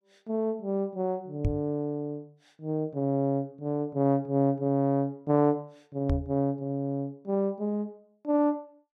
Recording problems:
microphone thump; at 1.5 s and at 6 s; peak +4 dB vs average level

